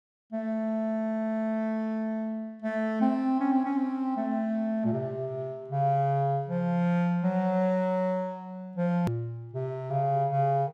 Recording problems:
hard cut with a click; at 9 s

